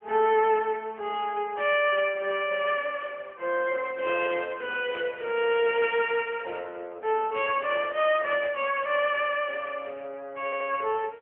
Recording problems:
phone line; 370 Hz to 3.2 kHz, AMR-NB
burst of static; at 5 s; peak -9 dB vs average level
stutter; at 10 s

